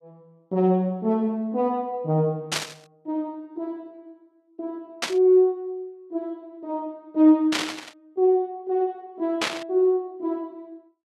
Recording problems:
burst of static; 4 times, first at 2.5 s; peak +3 dB vs average level

